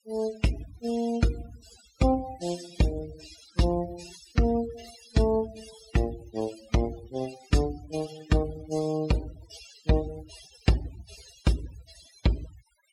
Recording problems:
noise reduction artefacts; signal-to-artefact ratio 14 dB

